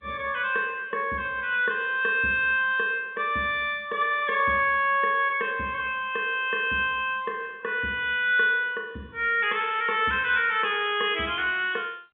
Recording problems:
phone line; 150 Hz to 3.6 kHz, G.711

